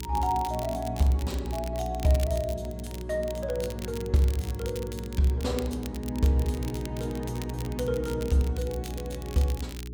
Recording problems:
hum; 60 Hz, harmonics up to 420 Hz, SNR 8 dB
crackling; vinyl, SNR 16 dB

